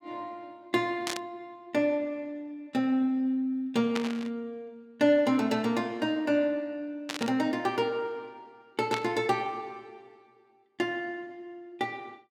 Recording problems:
static burst; 4 times, first at 1 s; peak 0 dB vs average level

